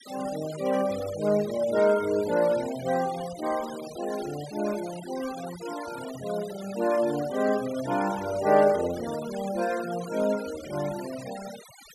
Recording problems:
noise reduction artefacts; signal-to-artefact ratio 15 dB

